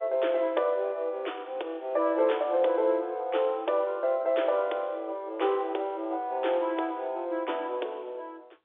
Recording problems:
telephone audio; 280 Hz to 3.6 kHz, G.711

